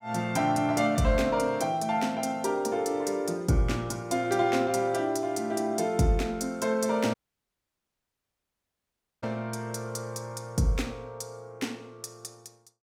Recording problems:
dropout; at 7 s for 2 s

